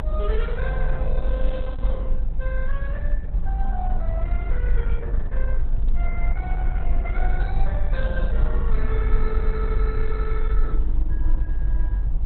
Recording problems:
codec artefacts; Opus, log-spectral distance 2 dB, nothing above 4.1 kHz
low-frequency rumble; below 48 Hz, strongest tone 20 Hz, SNR -9 dB

